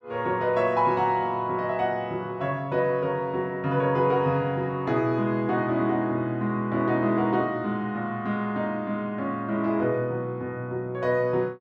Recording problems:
none

